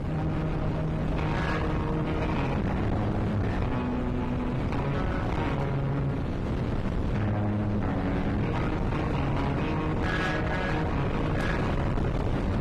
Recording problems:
lossy codec; AAC, then AAC, log-spectral distance 2 dB, nothing above 13.1 kHz
distortion; soft clipping, signal-to-distortion ratio 7 dB
wind noise; below 460 Hz, SNR 0 dB

